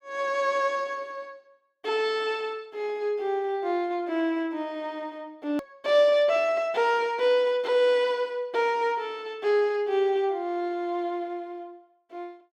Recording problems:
hard cut with a click; at 5.5 s

